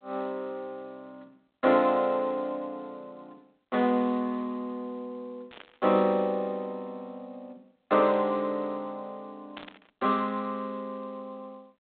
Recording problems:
telephone audio; 220 Hz to 3.7 kHz, G.726
static burst; at 5.5 s and at 9.5 s; peak -10 dB vs average level

